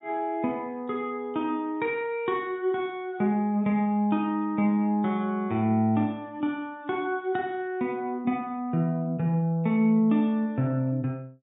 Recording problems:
low-pass filter; nothing above 4 kHz

